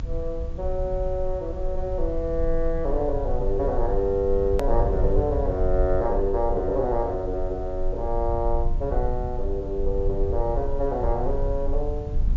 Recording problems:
treble cut off; nothing above 7.3 kHz
hiss; slope -5 dB per octave, SNR 28 dB
low-frequency rumble; below 54 Hz, strongest tone 22 Hz, SNR 4 dB
click at an edit; at 4.5 s

